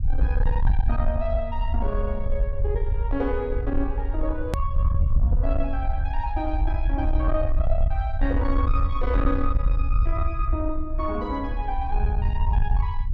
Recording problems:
distorted audio; soft clipping, signal-to-distortion ratio 10 dB
rumble; below 66 Hz, SNR -3 dB
hard cut with a click; at 4.5 s

